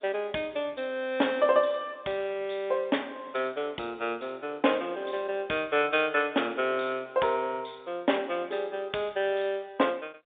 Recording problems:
phone line; 300 Hz to 3.6 kHz, G.711

